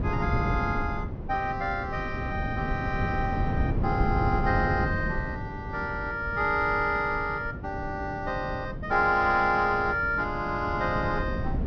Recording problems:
treble cut off; nothing above 6.2 kHz
hum; 50 Hz, harmonics up to 550 Hz, SNR 20 dB
wind noise; below 210 Hz, SNR 5 dB

